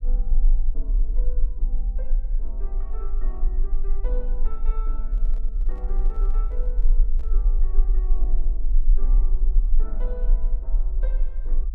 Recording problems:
rumble; below 36 Hz, strongest tone 22 Hz, SNR -18 dB
microphone handling noise; from 5 to 7.5 s; peak -3 dB vs average level

